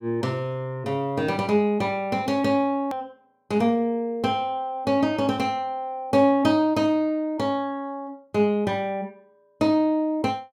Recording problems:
click at an edit; at 3 s

